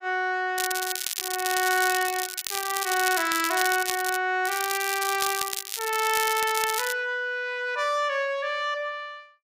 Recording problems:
crackle; from 0.5 to 4 s and from 4.5 to 7 s; loose cable, SNR 4 dB

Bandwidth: 15.5 kHz